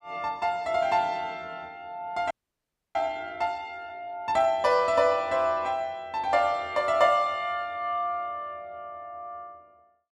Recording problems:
audio freezing; at 2.5 s for 0.5 s

